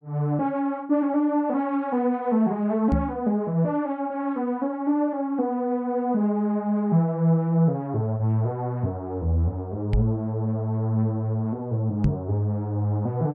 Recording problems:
microphone thump; at 3 s, at 10 s and at 12 s; peak +5 dB vs average level

